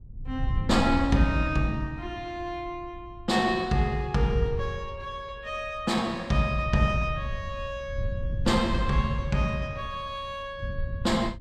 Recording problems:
wind on the microphone; below 100 Hz, SNR 7 dB

